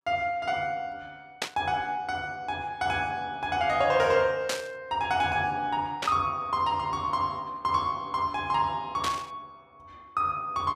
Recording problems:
static burst; 4 times, first at 1.5 s; peak +2 dB vs average level

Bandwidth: 15 kHz